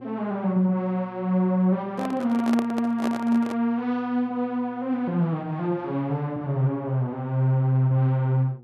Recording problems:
hum; 60 Hz, harmonics up to 840 Hz, SNR 25 dB
handling noise; from 2 to 3.5 s; peak -3 dB vs average level

